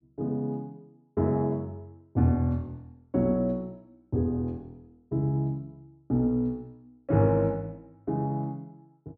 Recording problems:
none

